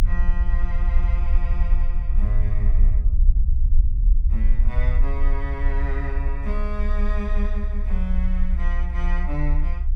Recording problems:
rumble; below 54 Hz, strongest tone 26 Hz, SNR -10 dB

